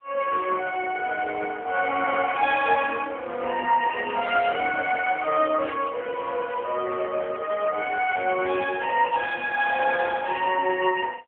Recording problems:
phone line; 340 Hz to 2.8 kHz, AMR-NB

